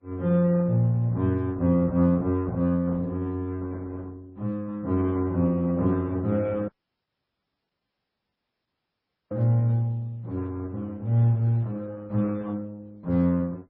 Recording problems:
codec artefacts; Opus, then MP3, log-spectral distance 2 dB, nothing above 17.7 kHz
audio cutting out; at 6.5 s for 2.5 s

